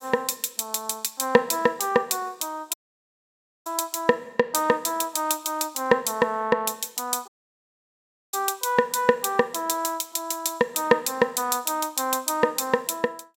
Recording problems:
dropout; at 2.5 s for 1 s and at 7.5 s for 1 s

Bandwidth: 16.5 kHz